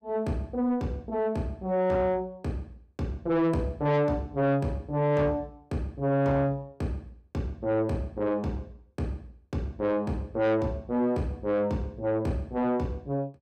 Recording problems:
distortion; soft clipping, signal-to-distortion ratio 10 dB

